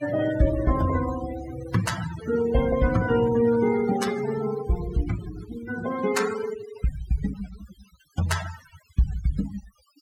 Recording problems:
denoising artefacts; signal-to-artefact ratio 12 dB

